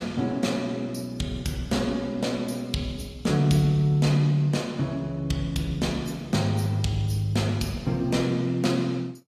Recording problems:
lossy compression; AAC, log-spectral distance 3 dB

